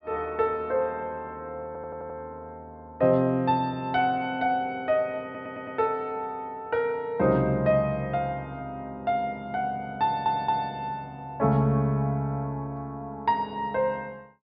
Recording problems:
treble cut off; nothing above 5.3 kHz
audio stuttering; at 1.5 s, at 5 s and at 10 s

